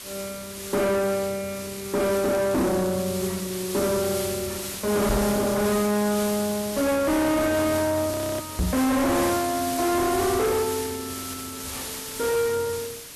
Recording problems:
distortion; soft clipping, signal-to-distortion ratio 5 dB
hiss; slope 0 dB per octave, SNR 8 dB
crackling; from 1.5 to 3 s and at 6.5 s; loose cable, SNR 26 dB
knock on the microphone; at 5 s and at 8.5 s; peak +3 dB vs average level
audio freezing; at 8 s

